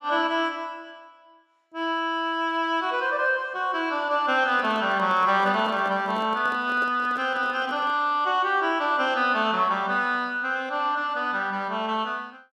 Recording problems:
handling noise; from 4.5 to 8 s; peak -9 dB vs average level

